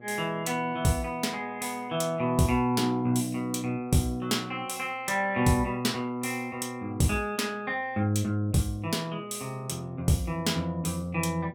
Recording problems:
hum; 60 Hz, harmonics up to 1.3 kHz, SNR 26 dB

